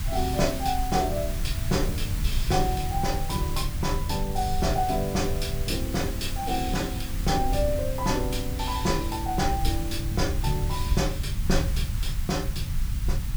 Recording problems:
hiss; slope +1 dB per octave, SNR 10 dB
low-frequency rumble; below 90 Hz, SNR 2 dB

